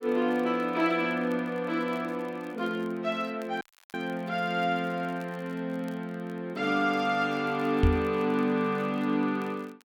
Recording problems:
crackle; vinyl, SNR 29 dB
audio cutting out; at 3.5 s
knock on the microphone; at 8 s; peak +7 dB vs average level

